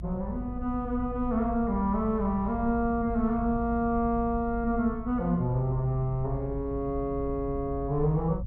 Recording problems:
rumble; below 82 Hz, strongest tone 52 Hz, SNR 10 dB

